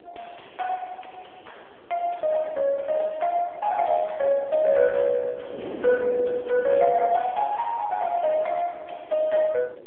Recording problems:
telephone audio; 220 Hz to 3.3 kHz, AMR-NB
wind noise; below 550 Hz, SNR 19 dB

